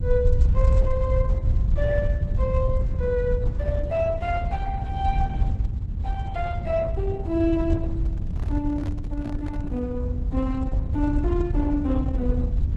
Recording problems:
lossy compression; Opus, log-spectral distance 2 dB
low-frequency rumble; below 80 Hz, SNR -4 dB
microphone handling noise; from 8 to 10 s; peak -10 dB vs average level

